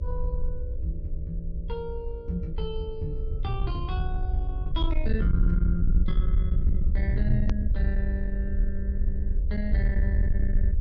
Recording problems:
treble cut off; nothing above 6.6 kHz
distortion; soft clipping, signal-to-distortion ratio 10 dB
electrical hum; 60 Hz, harmonics up to 600 Hz, SNR 16 dB
rumble; below 64 Hz, SNR -3 dB
click at an edit; at 7.5 s

